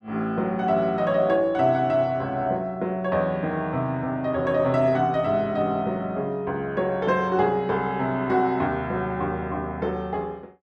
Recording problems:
none

